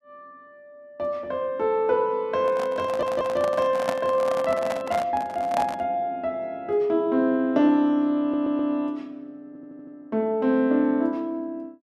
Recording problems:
handling noise; from 2.5 to 6 s; peak +1 dB vs average level
stutter; at 3 s, at 8 s and at 9.5 s

